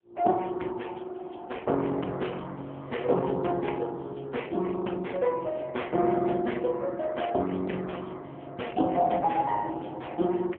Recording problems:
phone line; 190 Hz to 3.3 kHz, AMR-NB

